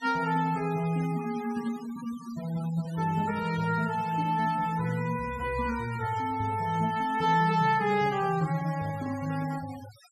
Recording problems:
denoising artefacts; signal-to-artefact ratio 17 dB

